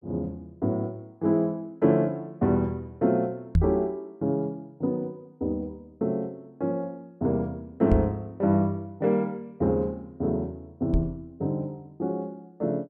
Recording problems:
microphone bump; at 3.5 s, at 8 s and at 11 s; peak +9 dB vs average level

